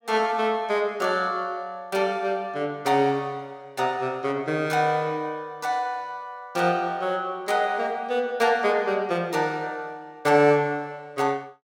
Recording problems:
none

